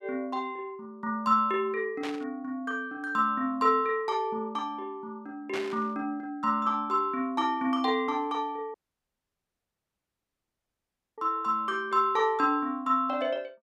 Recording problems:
static burst; at 2 s and at 5.5 s; peak -4 dB vs average level
audio cutting out; at 8.5 s for 2.5 s

